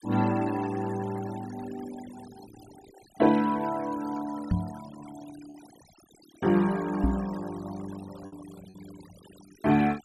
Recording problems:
noise reduction artefacts; signal-to-artefact ratio 19 dB
lost packets; 1.5% of the sound replaced, filled with repeated pitch periods
microphone thump; at 4.5 s and at 7 s; peak +5 dB vs average level

